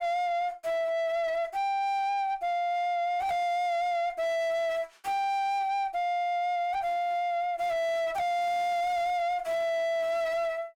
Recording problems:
distorted audio; soft clipping, signal-to-distortion ratio 6 dB

